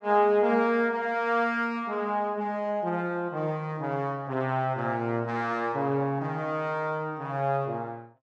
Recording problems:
none

